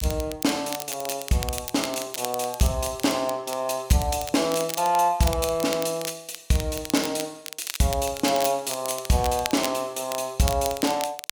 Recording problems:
crackle; vinyl, SNR 10 dB

